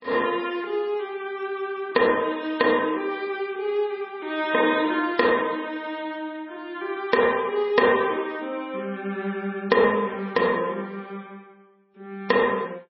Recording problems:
lossy compression; MP3, log-spectral distance 2 dB, nothing above 5 kHz

